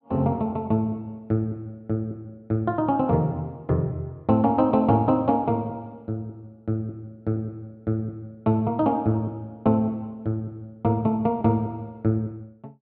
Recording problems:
none

